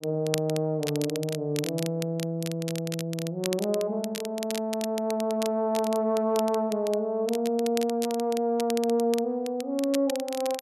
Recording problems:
crackle; vinyl, SNR 11 dB

